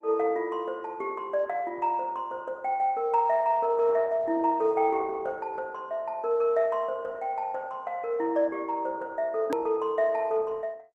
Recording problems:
lossy codec; Opus, log-spectral distance 2 dB, nothing above 15.1 kHz
edit click; at 9.5 s

